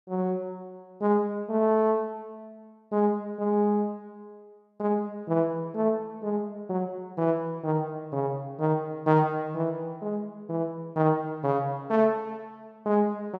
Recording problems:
none

